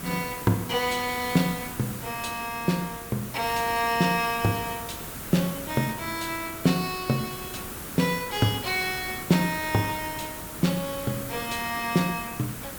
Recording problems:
hiss; SNR 9 dB

